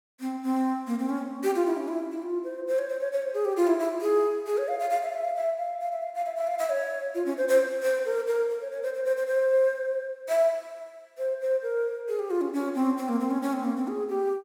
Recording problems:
none

